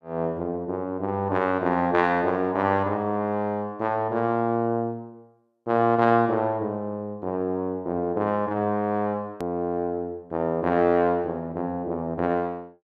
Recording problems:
edit click; at 9.5 s

